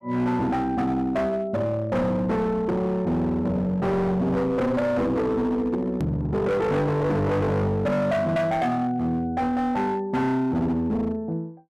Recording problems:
distortion; hard clipping, signal-to-distortion ratio 8 dB
click at an edit; at 6 s

